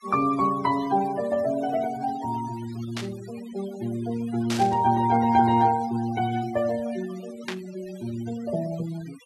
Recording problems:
denoising artefacts; signal-to-artefact ratio 17 dB
static burst; at 3 s, at 4.5 s and at 7.5 s; peak -2 dB vs average level

